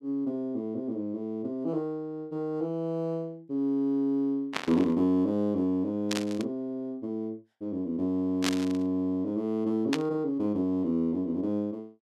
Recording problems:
burst of static; 4 times, first at 4.5 s; peak +3 dB vs average level

